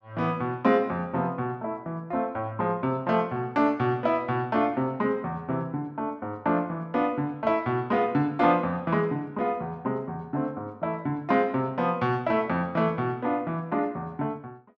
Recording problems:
none

